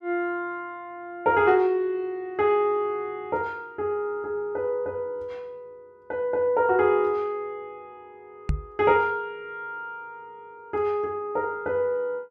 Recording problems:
microphone bump; at 8.5 s; peak +4 dB vs average level

